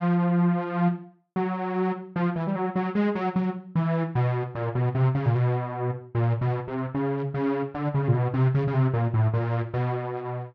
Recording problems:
none

